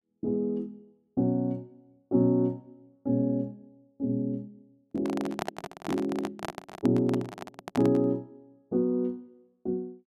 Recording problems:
microphone handling noise; from 5 to 8 s; peak +1 dB vs average level

